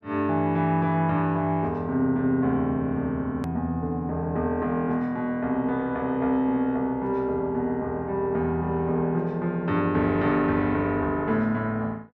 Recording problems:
edit click; at 3.5 s

